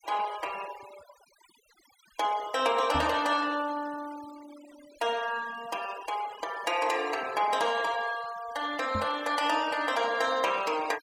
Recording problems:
denoising artefacts; signal-to-artefact ratio 16 dB
microphone thump; at 3 s and at 9 s; peak -2 dB vs average level

